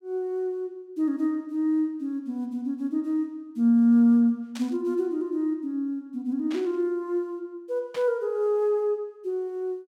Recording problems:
static burst; at 4.5 s, at 6.5 s and at 8 s; peak -10 dB vs average level

